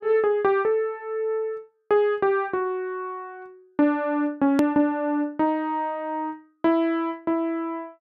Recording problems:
hard cut with a click; at 4.5 s

